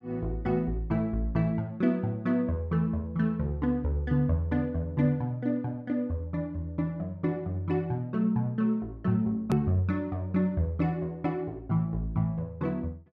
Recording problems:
edit click; at 9.5 s

